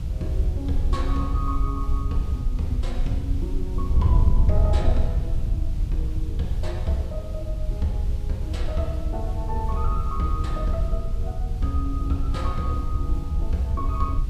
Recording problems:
background hiss; slope -3 dB per octave, SNR 19 dB
wind on the microphone; below 76 Hz, SNR -4 dB

